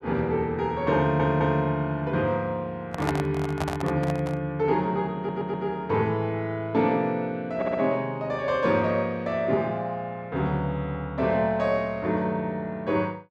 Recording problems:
stutter; at 1 s, at 5 s and at 7.5 s
handling noise; from 3 to 4.5 s; peak +2 dB vs average level

